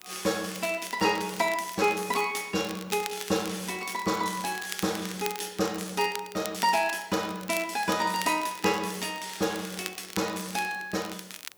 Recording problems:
background hiss; slope -4 dB per octave, SNR 28 dB
crackle; vinyl, SNR 12 dB

